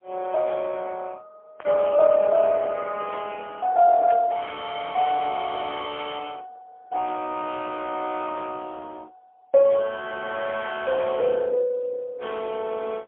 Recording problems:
telephone audio; 260 Hz to 3.5 kHz, AMR-NB, then MP3
burst of static; at 1.5 s and at 4 s; peak -12 dB vs average level

